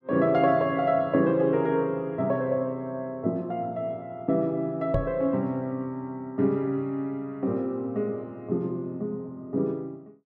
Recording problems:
microphone thump; at 5 s; peak +3 dB vs average level

